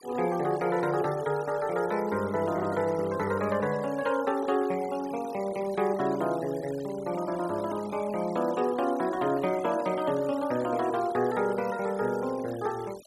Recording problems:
denoising artefacts; signal-to-artefact ratio 19 dB

